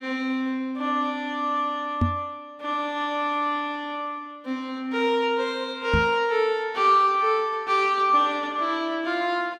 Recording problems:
knock on the microphone; at 2 s and at 6 s; peak +5 dB vs average level

